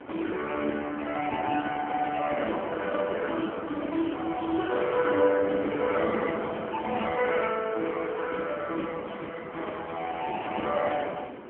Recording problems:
phone line; 240 Hz to 2.6 kHz, AMR-NB
wind on the microphone; below 890 Hz, SNR 11 dB

